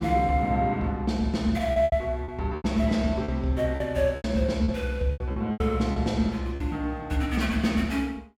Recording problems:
packet loss; 9% of the sound replaced, filled with repeated pitch periods

